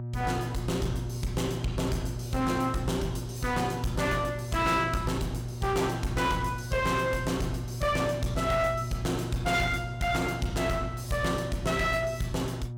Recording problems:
distorted audio; hard clipping, uneven, signal-to-distortion ratio 11 dB
electrical hum; 60 Hz, harmonics up to 600 Hz, SNR 8 dB

